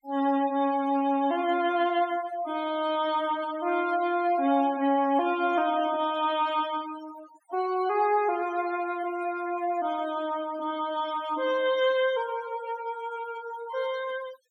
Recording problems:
noise reduction artefacts; signal-to-artefact ratio 18 dB

